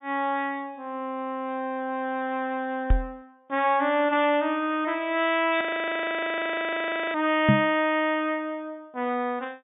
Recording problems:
treble missing; nothing above 3.7 kHz
knock on the microphone; at 3 s and at 7.5 s; peak +9 dB vs average level
frozen audio; at 5.5 s for 1.5 s

